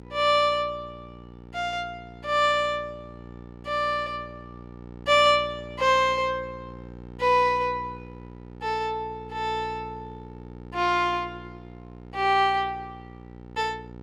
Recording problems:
mains hum; 60 Hz, harmonics up to 1.3 kHz, SNR 18 dB

